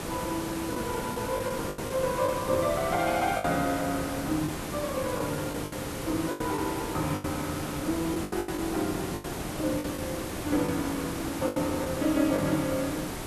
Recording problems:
background hiss; slope -5 dB per octave, SNR 5 dB
lost packets; 8% of the sound replaced, filled with the last packet

